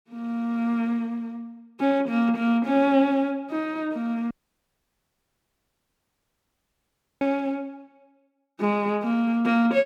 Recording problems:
dropout; at 4.5 s for 3 s

